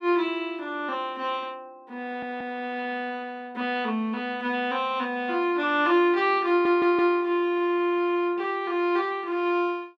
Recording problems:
audio stuttering; at 2 s and at 6.5 s

